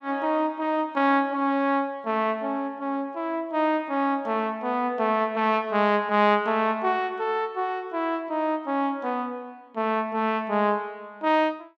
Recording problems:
none

